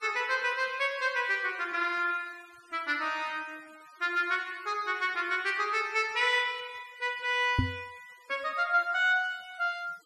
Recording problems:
noise reduction artefacts; signal-to-artefact ratio 25 dB
microphone thump; at 7.5 s; peak +5 dB vs average level

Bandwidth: 13.5 kHz